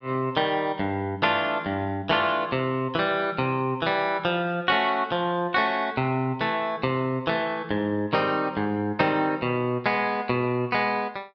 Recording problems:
low-pass filter; nothing above 5.5 kHz

